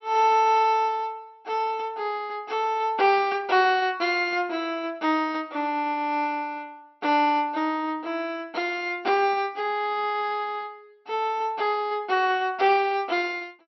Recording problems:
treble missing; nothing above 5.8 kHz

